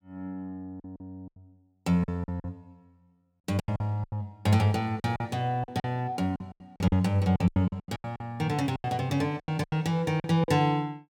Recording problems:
packet loss; 16% of the sound replaced, filled with silence

